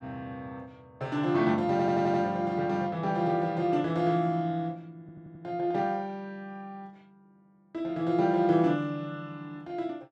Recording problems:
stutter; at 1.5 s and at 5 s

